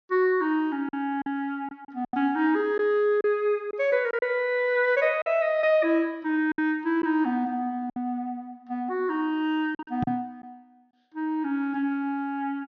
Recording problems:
treble cut off; nothing above 6.4 kHz
lost packets; 5% of the sound replaced, filled with silence
microphone bump; at 10 s; peak 0 dB vs average level

